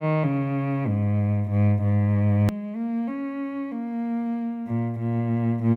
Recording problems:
hard cut with a click; at 2.5 s

